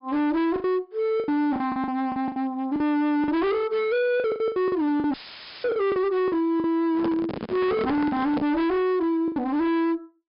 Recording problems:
treble missing; nothing above 5.5 kHz
distortion; hard clipping, signal-to-distortion ratio 7 dB
packet loss; 11% of the sound replaced, filled with the last packet
audio cutting out; at 5 s for 0.5 s; filled with static
handling noise; from 7 to 8.5 s; peak -1 dB vs average level

